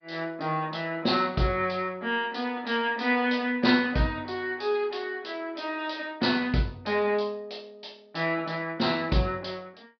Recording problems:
treble cut off; nothing above 5 kHz
codec artefacts; MP2, log-spectral distance 3 dB

